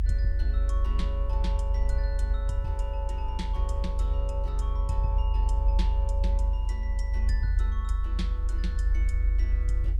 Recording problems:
background hiss; slope -4 dB per octave, SNR 28 dB
rumble; below 70 Hz, strongest tone 46 Hz, SNR -10 dB

